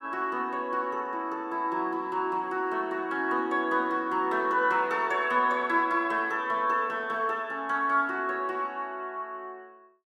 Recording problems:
none

